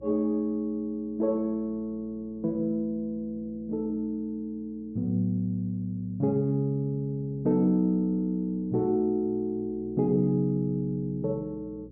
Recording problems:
hum; 60 Hz, harmonics up to 540 Hz, SNR 24 dB

